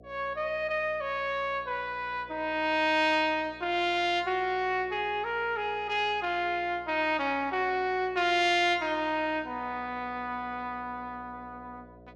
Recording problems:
hum; 60 Hz, harmonics up to 720 Hz, SNR 24 dB

